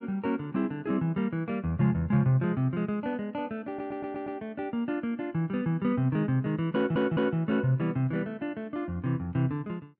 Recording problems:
stutter; at 3.5 s and at 7 s

